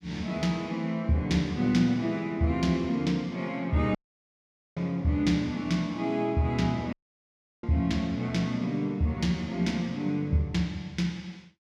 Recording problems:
dropout; at 4 s for 1 s and at 7 s for 0.5 s

